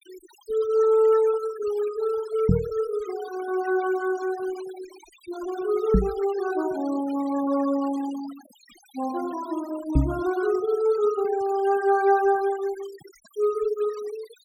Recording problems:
denoising artefacts; signal-to-artefact ratio 20 dB
microphone thump; at 2.5 s, at 6 s and at 10 s; peak +8 dB vs average level

